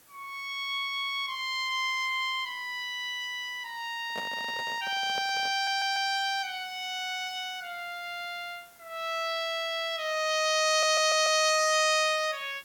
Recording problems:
background hiss; slope -2 dB per octave, SNR 27 dB
microphone handling noise; from 4 to 6 s; peak -7 dB vs average level
audio stuttering; at 5.5 s and at 11 s

